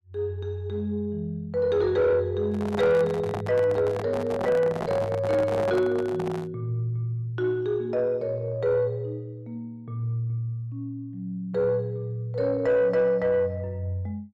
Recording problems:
distortion; soft clipping, signal-to-distortion ratio 12 dB
microphone handling noise; from 2.5 to 6.5 s; peak 0 dB vs average level

